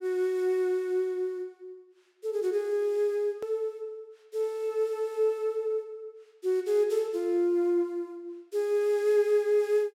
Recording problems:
edit click; at 3.5 s

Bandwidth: 16 kHz